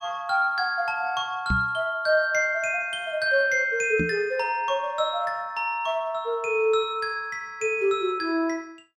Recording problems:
microphone bump; at 1.5 s and at 4 s; peak +1 dB vs average level

